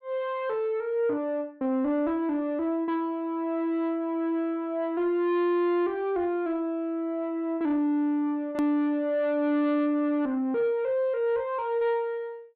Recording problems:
treble missing; nothing above 4.5 kHz
distortion; soft clipping, signal-to-distortion ratio 11 dB
edit click; at 8.5 s

